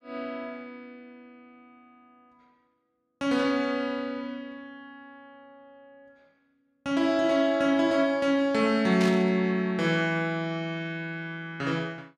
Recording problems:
static burst; at 9 s; peak -4 dB vs average level

